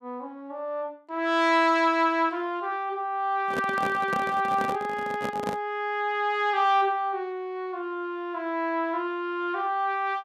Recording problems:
handling noise; from 3.5 to 5.5 s; peak -2 dB vs average level

